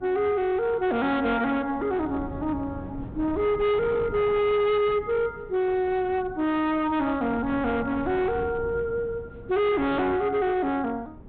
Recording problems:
treble cut off; nothing above 4 kHz
distorted audio; hard clipping, signal-to-distortion ratio 11 dB
wind on the microphone; below 290 Hz, SNR 16 dB

